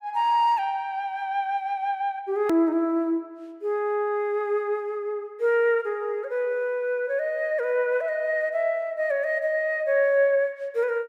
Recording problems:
edit click; at 2.5 s

